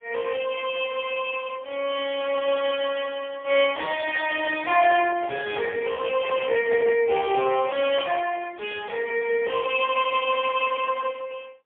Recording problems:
telephone audio; 340 Hz to 3.3 kHz, AMR-NB, then MP3
handling noise; from 3.5 to 7 s; peak -6 dB vs average level

